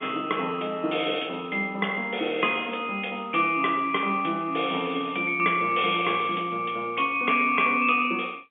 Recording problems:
telephone audio; 220 Hz to 3.5 kHz, G.711

